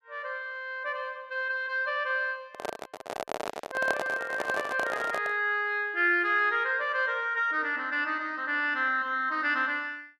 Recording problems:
microphone handling noise; from 2.5 to 5.5 s; peak +2 dB vs average level

